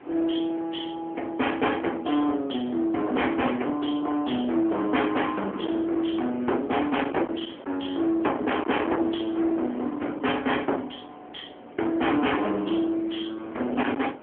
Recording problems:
phone line; 220 Hz to 3.3 kHz, AMR-NB
distortion; hard clipping, signal-to-distortion ratio 8 dB
wind noise; below 1 kHz, SNR 13 dB

